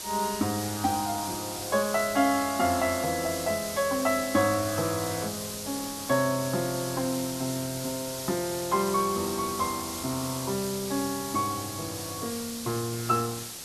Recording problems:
background hiss; SNR 6 dB

